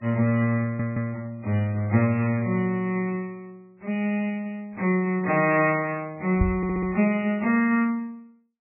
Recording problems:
lossy codec; MP3, log-spectral distance 2 dB, nothing above 2.5 kHz
audio stuttering; at 0.5 s and at 6.5 s
microphone bump; at 6.5 s; peak +5 dB vs average level

